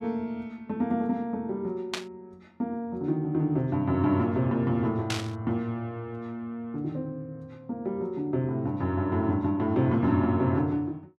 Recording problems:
burst of static; at 2 s and at 5 s; peak +2 dB vs average level

